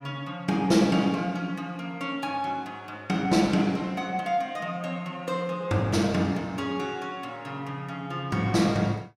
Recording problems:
none

